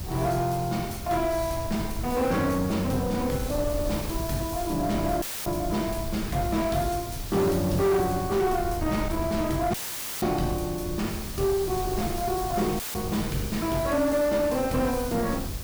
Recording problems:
distorted audio; soft clipping, signal-to-distortion ratio 11 dB
hiss; slope 0 dB per octave, SNR 12 dB
wind noise; below 150 Hz, SNR 10 dB
dropout; at 5 s, at 9.5 s and at 13 s; filled with static

